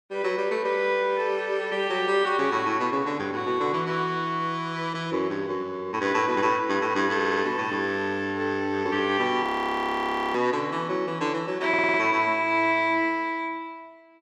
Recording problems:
stutter; at 7 s and at 12 s
frozen audio; at 9.5 s for 1 s

